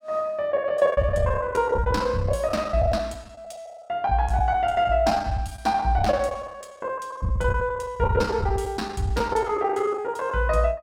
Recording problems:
lost packets; 16% of the sound replaced, filled with the last packet

